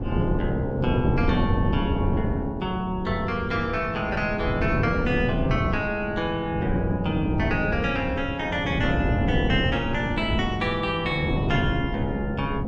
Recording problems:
wind noise; below 280 Hz, SNR 2 dB

